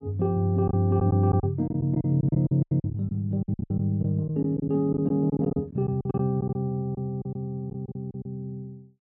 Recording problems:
packet loss; 13% of the sound replaced, filled with silence

